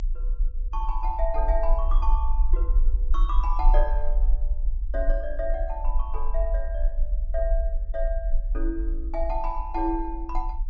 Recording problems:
treble missing; nothing above 7.6 kHz
rumble; below 44 Hz, strongest tone 30 Hz, SNR -4 dB

